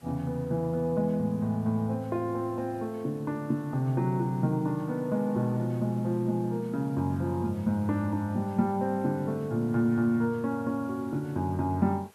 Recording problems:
background hiss; slope -3 dB per octave, SNR 28 dB

